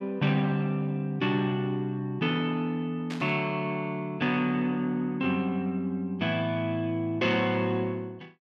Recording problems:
burst of static; at 3 s; peak -7 dB vs average level

